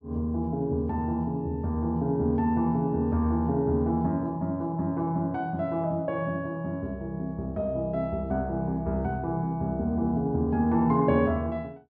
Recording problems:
none

